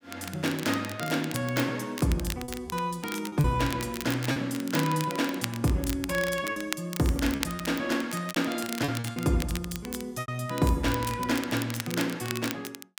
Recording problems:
crackle; vinyl, SNR 10 dB
packet loss; 5% of the sound replaced, filled with repeated pitch periods

